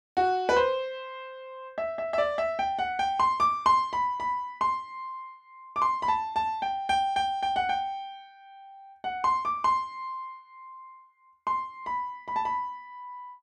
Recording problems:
none

